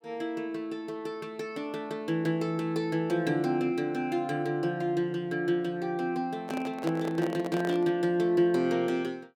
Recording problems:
handling noise; from 6.5 to 8 s; peak -1 dB vs average level

